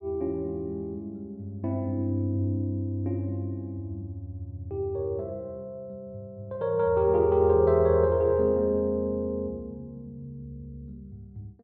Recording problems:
none

